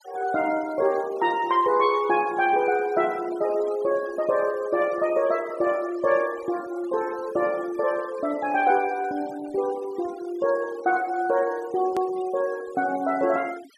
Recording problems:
denoising artefacts; signal-to-artefact ratio 20 dB
click at an edit; at 12 s

